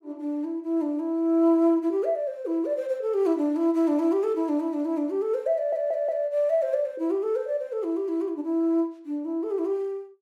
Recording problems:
stutter; at 5.5 s

